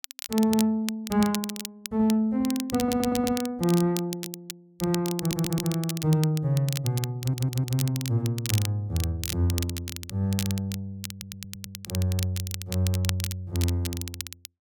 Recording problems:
crackling; vinyl, SNR 9 dB
audio stuttering; 4 times, first at 3 s

